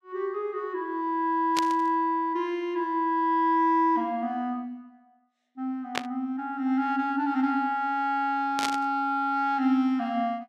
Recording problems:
static burst; at 1.5 s, at 6 s and at 8.5 s; peak +3 dB vs average level

